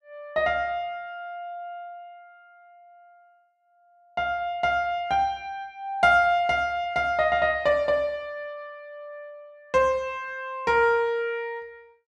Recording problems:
none

